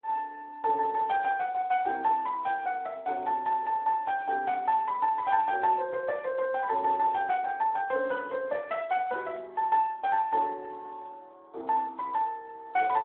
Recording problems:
phone line; 300 Hz to 3.6 kHz, Speex

